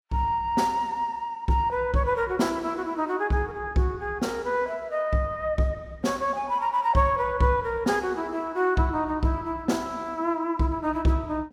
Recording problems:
none

